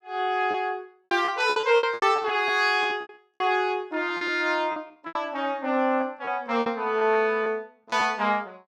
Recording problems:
packet loss; 12% of the sound replaced, filled with repeated pitch periods

